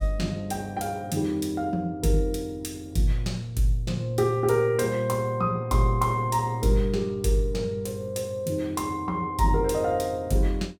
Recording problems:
none

